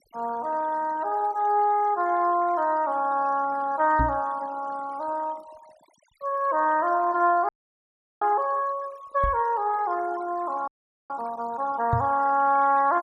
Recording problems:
denoising artefacts; signal-to-artefact ratio 23 dB
microphone bump; at 4 s, at 9 s and at 12 s; peak +2 dB vs average level
frozen audio; at 7.5 s for 0.5 s and at 11 s

